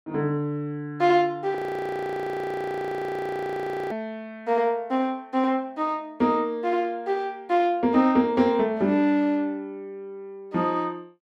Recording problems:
audio freezing; at 1.5 s for 2.5 s

